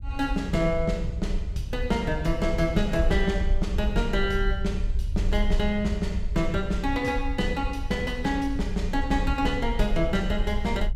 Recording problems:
rumble; below 60 Hz, SNR 4 dB

